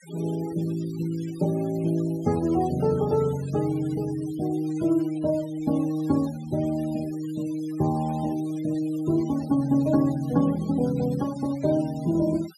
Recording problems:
noise reduction artefacts; signal-to-artefact ratio 21 dB

